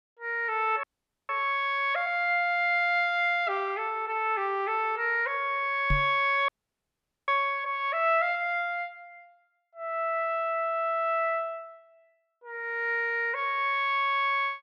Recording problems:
frozen audio; at 1 s and at 6.5 s for 1 s
microphone bump; at 6 s; peak +1 dB vs average level

